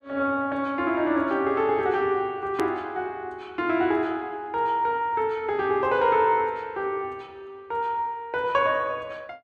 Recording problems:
edit click; at 2.5 s

